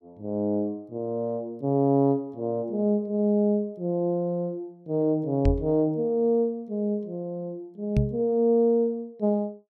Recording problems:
microphone thump; at 5.5 s and at 8 s; peak +6 dB vs average level

